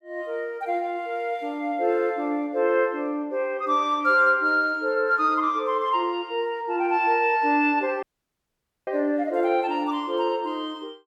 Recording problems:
dropout; at 8 s for 1 s

